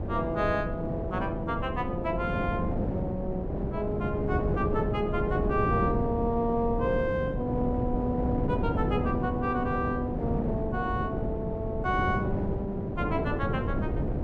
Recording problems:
wind on the microphone; below 350 Hz, SNR 1 dB

